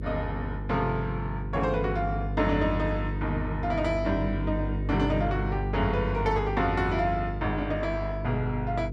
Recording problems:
hum; 50 Hz, harmonics up to 500 Hz, SNR 4 dB

